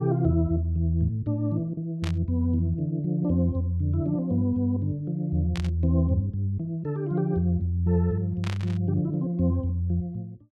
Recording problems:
burst of static; at 2 s, at 5.5 s and at 8.5 s; peak -6 dB vs average level

